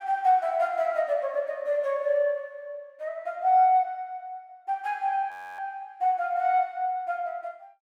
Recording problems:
frozen audio; at 5.5 s

